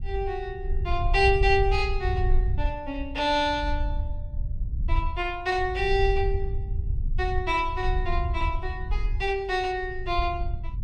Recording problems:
rumble; below 70 Hz, SNR 4 dB

